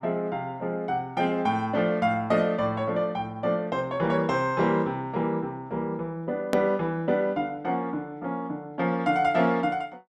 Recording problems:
hard cut with a click; at 6.5 s

